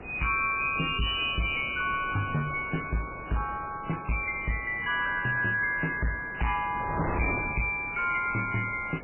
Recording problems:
lossy compression; MP3, log-spectral distance 7 dB, nothing above 2.5 kHz
distorted audio; hard clipping, signal-to-distortion ratio 6 dB
wind on the microphone; below 930 Hz, SNR 12 dB

